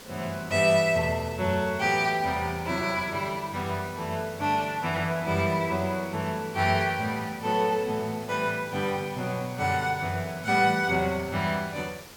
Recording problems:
hiss; slope -3 dB per octave, SNR 18 dB

